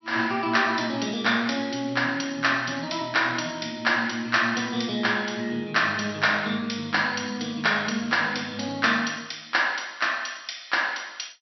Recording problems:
treble missing; nothing above 5.9 kHz

